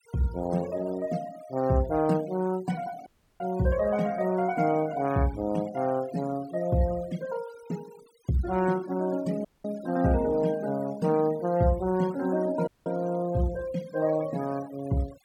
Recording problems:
noise reduction artefacts; signal-to-artefact ratio 19 dB
dropout; at 3 s, at 9.5 s and at 13 s

